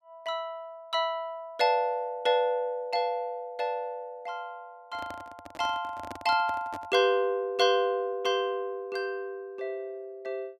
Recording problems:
handling noise; from 5 to 7 s; peak -7 dB vs average level

